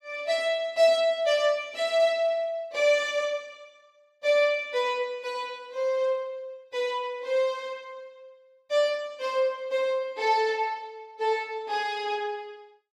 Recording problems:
none

